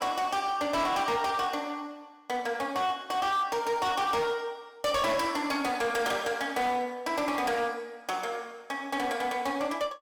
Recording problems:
distortion; hard clipping, signal-to-distortion ratio 10 dB

